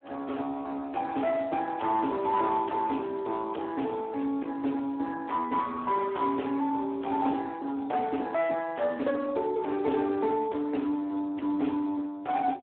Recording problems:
phone line; 240 Hz to 3.5 kHz, Speex
distorted audio; hard clipping, uneven, signal-to-distortion ratio 10 dB

